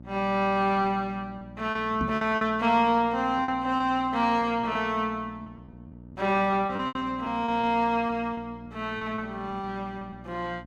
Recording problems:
hum; 60 Hz, harmonics up to 900 Hz, SNR 19 dB
lost packets; 8% of the sound replaced, filled with repeated pitch periods
microphone bump; at 2 s; peak -1 dB vs average level

